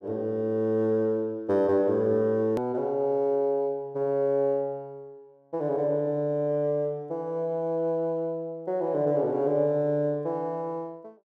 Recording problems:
hard cut with a click; at 2.5 s

